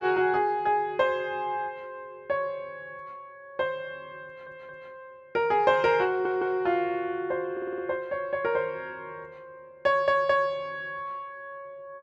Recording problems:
stutter; 4 times, first at 4.5 s

